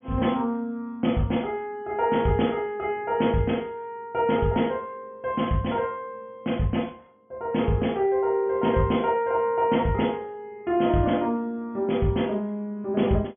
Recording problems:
treble missing; nothing above 3.4 kHz

